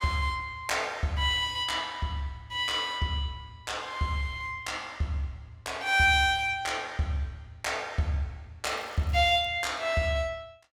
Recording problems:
crackle; at 8.5 s; loose cable, SNR 28 dB

